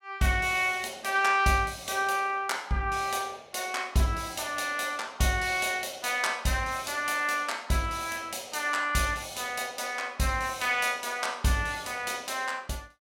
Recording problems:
none

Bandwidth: 17.5 kHz